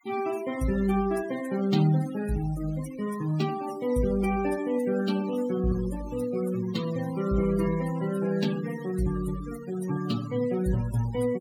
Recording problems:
denoising artefacts; signal-to-artefact ratio 15 dB

